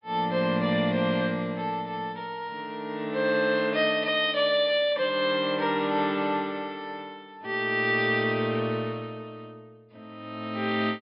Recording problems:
treble missing; nothing above 5.5 kHz

